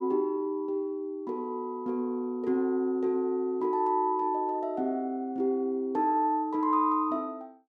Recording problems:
none

